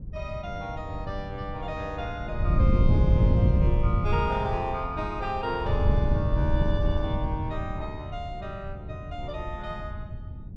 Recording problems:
wind noise; below 130 Hz, SNR -5 dB

